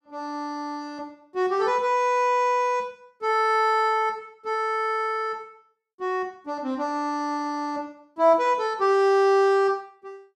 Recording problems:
none

